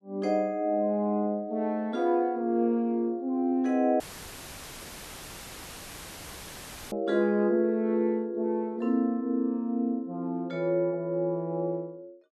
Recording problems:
audio cutting out; at 4 s for 3 s; filled with static

